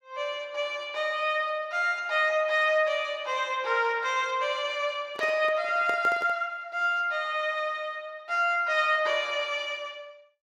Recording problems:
handling noise; from 5 to 6.5 s; peak -6 dB vs average level

